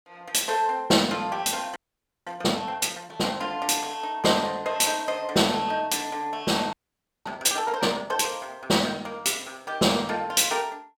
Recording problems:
audio freezing; at 2 s and at 6.5 s for 0.5 s

